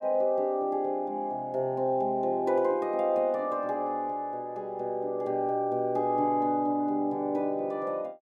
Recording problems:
none

